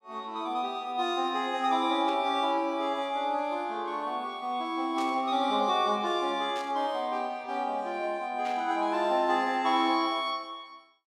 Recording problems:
static burst; 4 times, first at 2 s; peak -10 dB vs average level

